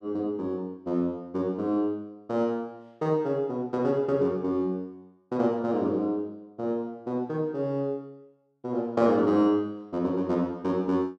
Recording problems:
none

